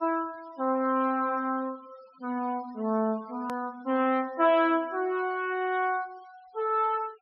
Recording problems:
low-pass filter; nothing above 5.6 kHz
noise reduction artefacts; signal-to-artefact ratio 24 dB
hard cut with a click; at 3.5 s

